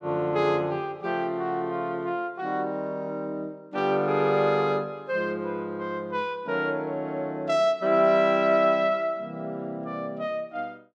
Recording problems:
none

